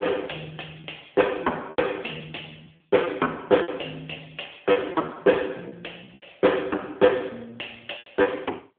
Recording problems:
telephone audio; 260 Hz to 3.4 kHz, AMR-NB
lost packets; 10% of the sound replaced, filled with repeated pitch periods

